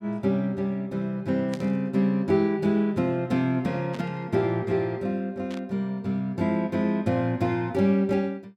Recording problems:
static burst; at 1.5 s, at 4 s and at 5.5 s; peak -10 dB vs average level

